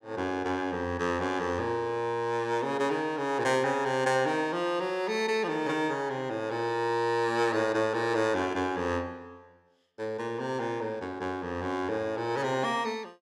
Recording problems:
none

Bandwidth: 16.5 kHz